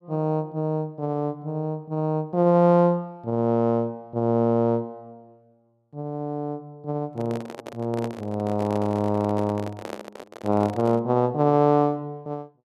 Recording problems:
handling noise; from 7 to 11 s; peak -6 dB vs average level

